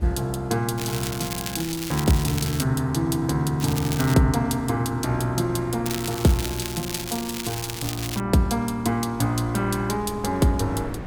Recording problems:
wind on the microphone; below 380 Hz, SNR 19 dB
crackle; from 1 to 2.5 s, at 3.5 s and from 6 to 8 s; loose cable, SNR 8 dB

